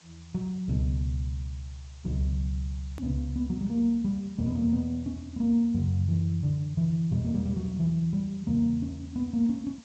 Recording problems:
low-pass filter; nothing above 8 kHz
background hiss; slope 0 dB per octave, SNR 27 dB
hard cut with a click; at 3 s

